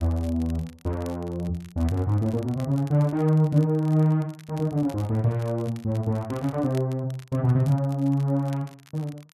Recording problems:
crackling; vinyl, SNR 26 dB

